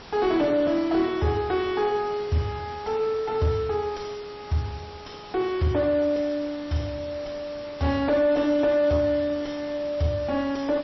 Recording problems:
codec artefacts; MP3, log-spectral distance 6 dB, nothing above 5.7 kHz
distorted audio; soft clipping, signal-to-distortion ratio 9 dB
hiss; SNR 13 dB

